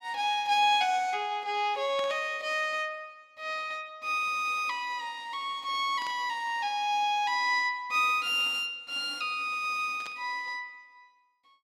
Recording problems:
burst of static; at 2 s, at 6 s and at 10 s; peak -9 dB vs average level

